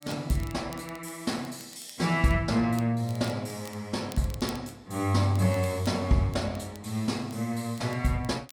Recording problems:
crackling; vinyl, SNR 22 dB

